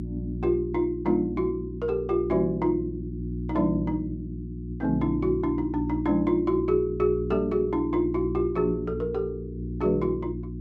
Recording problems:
hum; 60 Hz, harmonics up to 360 Hz, SNR 8 dB

